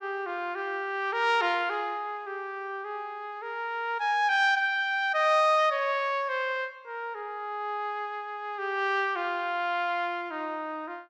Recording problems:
none

